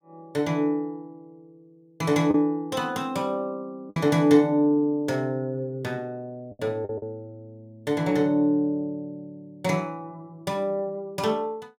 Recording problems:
lost packets; 2% of the sound replaced, filled with the last packet

